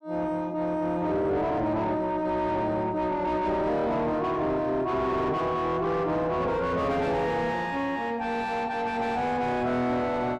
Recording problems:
distorted audio; soft clipping, signal-to-distortion ratio 7 dB

